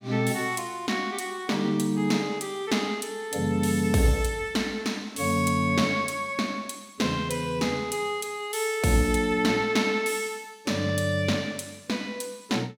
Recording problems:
none

